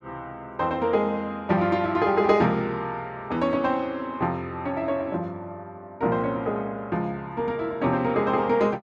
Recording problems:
none

